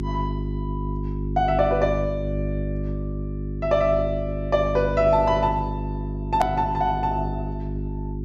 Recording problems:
treble missing; nothing above 7.6 kHz
electrical hum; 50 Hz, harmonics up to 400 Hz, SNR 5 dB
hard cut with a click; at 6.5 s

